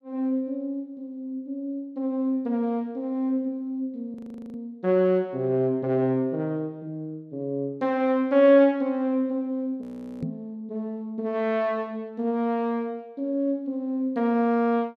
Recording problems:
frozen audio; at 4 s and at 10 s
microphone thump; at 10 s; peak -1 dB vs average level

